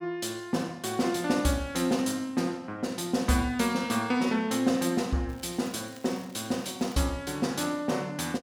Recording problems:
crackle; from 5.5 to 7 s; loose cable, SNR 24 dB

